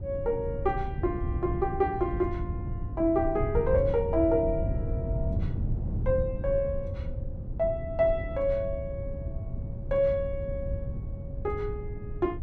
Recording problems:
wind on the microphone; below 120 Hz, SNR 5 dB

